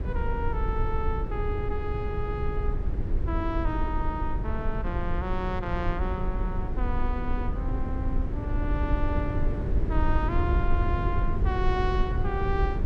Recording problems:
rumble; below 82 Hz, SNR -3 dB

